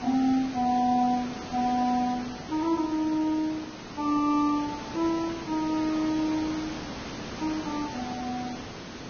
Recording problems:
codec artefacts; Vorbis, log-spectral distance 7 dB, nothing above 5.8 kHz
background hiss; slope -4 dB per octave, SNR 10 dB

